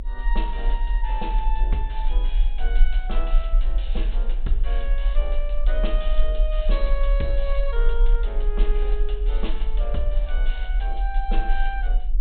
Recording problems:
low-pass filter; nothing above 4 kHz
mains hum; 60 Hz, harmonics up to 600 Hz, SNR 21 dB
rumble; below 40 Hz, SNR -7 dB

